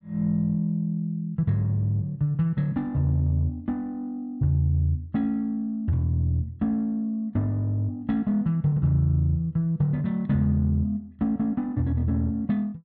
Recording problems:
none

